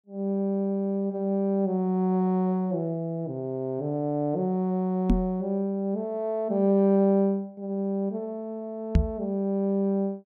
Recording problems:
knock on the microphone; at 5 s and at 9 s; peak +9 dB vs average level

